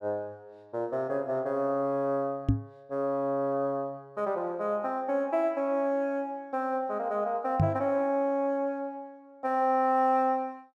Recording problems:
knock on the microphone; at 2.5 s and at 7.5 s; peak +8 dB vs average level

